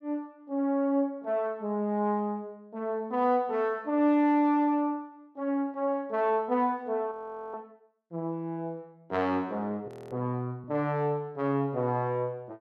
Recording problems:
audio freezing; at 7 s and at 10 s

